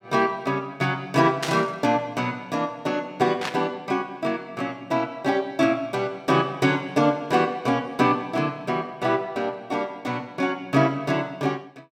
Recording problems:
burst of static; at 1.5 s and at 3.5 s; peak +1 dB vs average level

